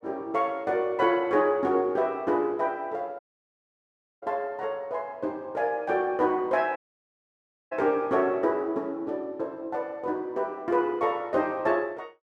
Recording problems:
audio cutting out; at 3 s for 1 s and at 7 s for 1 s

